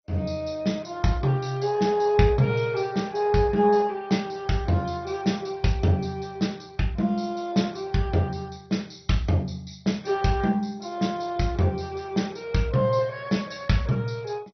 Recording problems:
lossy compression; MP2, log-spectral distance 4 dB, nothing above 6 kHz

